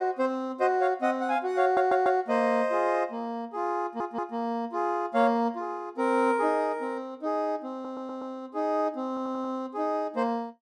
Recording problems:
audio stuttering; 4 times, first at 1.5 s

